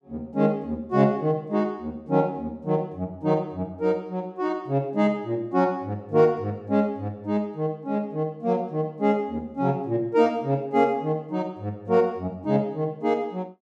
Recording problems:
none

